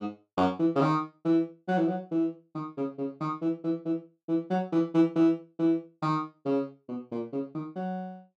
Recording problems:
none

